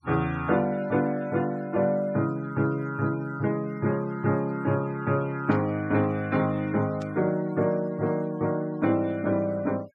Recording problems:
denoising artefacts; signal-to-artefact ratio 24 dB
static burst; at 5.5 s and at 7 s; peak -17 dB vs average level

